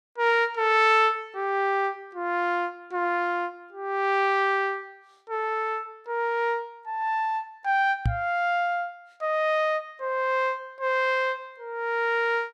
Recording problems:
knock on the microphone; at 8 s; peak +4 dB vs average level

